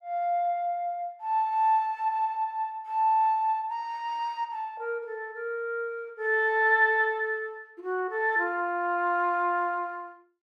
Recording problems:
none

